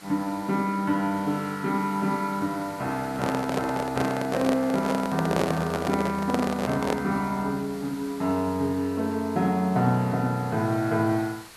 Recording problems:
background hiss; slope -1 dB per octave, SNR 19 dB
handling noise; from 3 to 7 s; peak +3 dB vs average level

